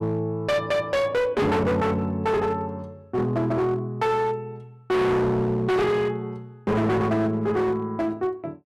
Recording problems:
distortion; hard clipping, signal-to-distortion ratio 6 dB

